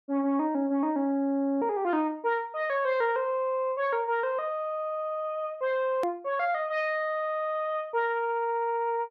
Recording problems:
edit click; at 6 s

